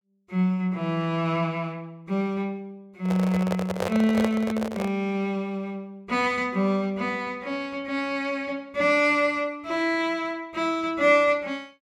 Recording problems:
handling noise; from 3 to 5 s; peak +1 dB vs average level

